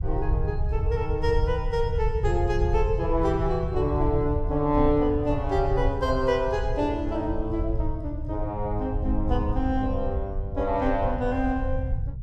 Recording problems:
rumble; below 88 Hz, SNR 3 dB

